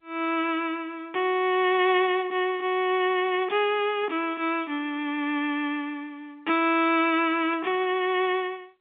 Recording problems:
phone line; 190 Hz to 3.5 kHz, G.711

